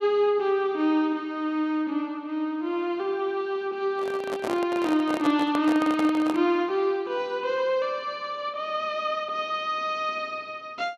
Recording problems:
handling noise; from 4 to 6.5 s; peak -2 dB vs average level

